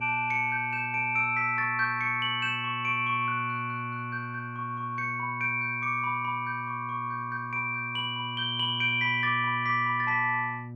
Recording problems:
hum; 60 Hz, harmonics up to 600 Hz, SNR 13 dB

